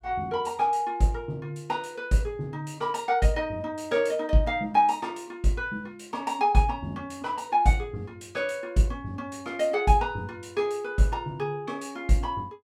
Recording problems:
none

